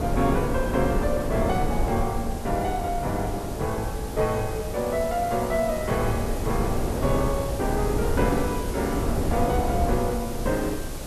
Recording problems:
background hiss; slope 0 dB per octave, SNR 13 dB
wind on the microphone; below 350 Hz, SNR 3 dB

